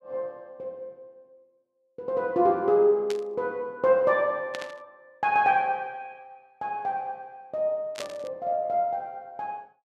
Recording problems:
static burst; at 3 s, at 4.5 s and at 8 s; peak -5 dB vs average level

